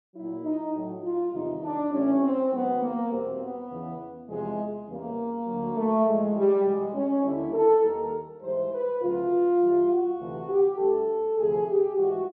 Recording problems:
none

